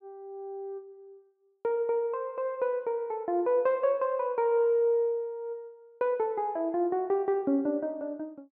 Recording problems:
none

